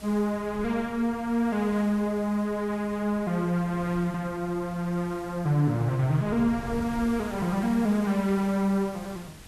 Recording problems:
hiss; slope -2 dB per octave, SNR 21 dB
wind on the microphone; below 240 Hz, SNR 20 dB

